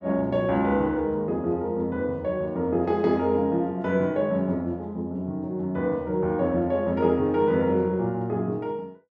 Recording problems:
none

